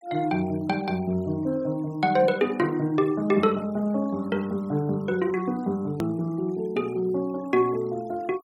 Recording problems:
noise reduction artefacts; signal-to-artefact ratio 27 dB
edit click; at 6 s

